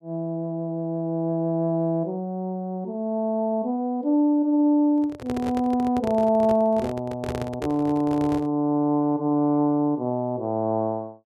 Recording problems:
handling noise; from 5 to 8.5 s; peak -4 dB vs average level

